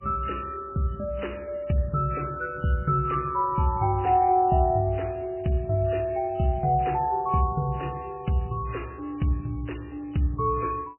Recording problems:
lossy codec; MP3, log-spectral distance 3 dB, nothing above 3 kHz

